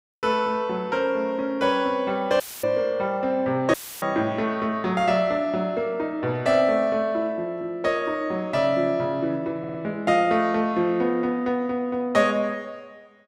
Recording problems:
dropout; at 2.5 s and at 3.5 s; filled with static
audio stuttering; at 9.5 s

